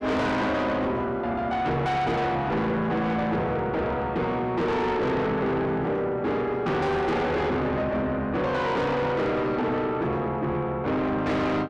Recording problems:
distorted audio; soft clipping, signal-to-distortion ratio 6 dB

